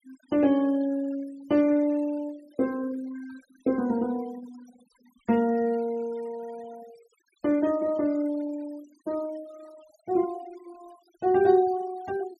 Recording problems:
noise reduction artefacts; signal-to-artefact ratio 24 dB

